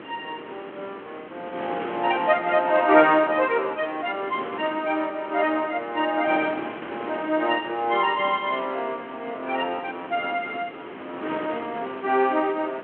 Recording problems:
telephone audio; 240 Hz to 3.4 kHz, G.726
wind noise; below 1.5 kHz, SNR 14 dB

